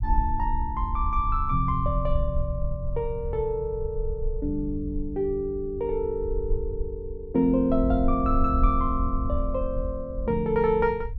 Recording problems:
rumble; below 64 Hz, SNR 5 dB

